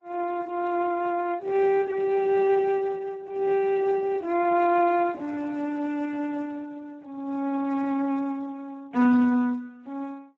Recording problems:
codec artefacts; MP3, then Speex, log-spectral distance 2 dB

